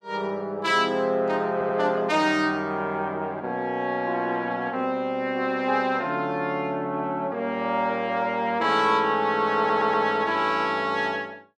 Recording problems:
audio stuttering; at 1.5 s and at 9.5 s

